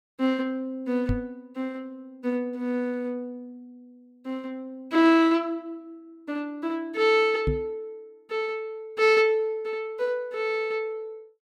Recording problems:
microphone bump; at 1 s and at 7.5 s; peak +3 dB vs average level

